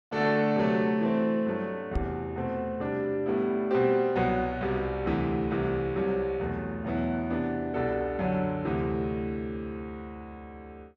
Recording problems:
knock on the microphone; at 2 s; peak 0 dB vs average level

